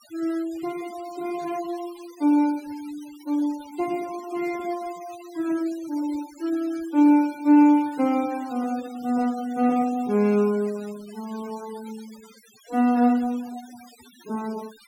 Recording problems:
denoising artefacts; signal-to-artefact ratio 22 dB

